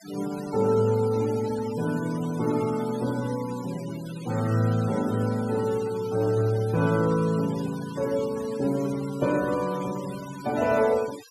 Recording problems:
denoising artefacts; signal-to-artefact ratio 17 dB

